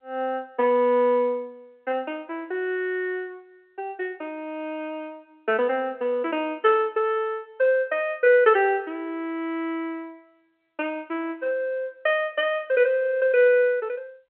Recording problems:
phone line; 260 Hz to 3.4 kHz, G.711

